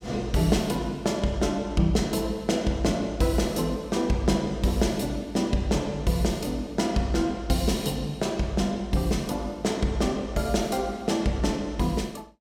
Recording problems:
none

